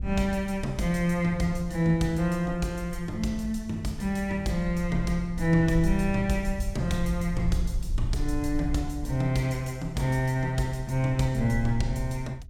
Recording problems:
low-frequency rumble; below 68 Hz, SNR 9 dB

